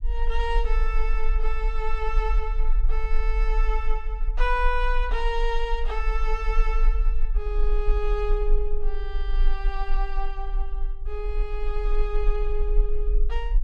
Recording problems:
rumble; below 36 Hz, strongest tone 20 Hz, SNR -3 dB

